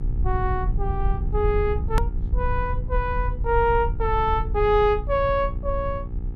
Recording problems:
electrical hum; 60 Hz, harmonics up to 900 Hz, SNR 15 dB
low-frequency rumble; below 74 Hz, SNR 3 dB
click at an edit; at 2 s

